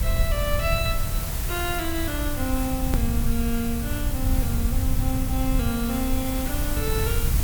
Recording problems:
hiss; slope -2 dB per octave, SNR 3 dB
rumble; below 92 Hz, SNR -1 dB
edit click; at 3 s

